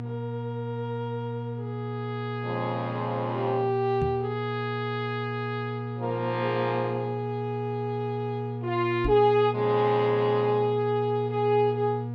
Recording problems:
hum; 60 Hz, harmonics up to 960 Hz, SNR 6 dB
knock on the microphone; at 4 s and at 9 s; peak 0 dB vs average level

